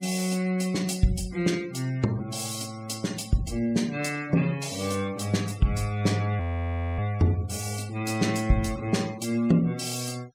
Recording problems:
noise reduction artefacts; signal-to-artefact ratio 19 dB
audio freezing; at 6.5 s for 0.5 s

